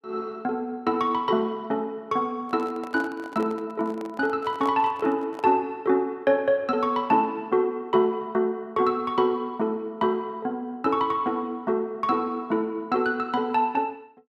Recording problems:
handling noise; from 2.5 to 5.5 s; peak -8 dB vs average level

